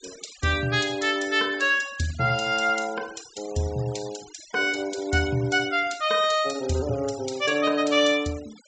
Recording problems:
treble missing; nothing above 8 kHz
noise reduction artefacts; signal-to-artefact ratio 19 dB

